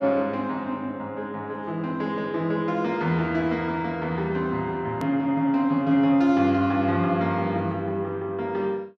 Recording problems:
click at an edit; at 5 s

